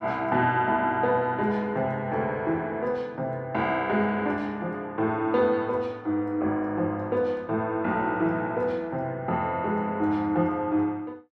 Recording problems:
none

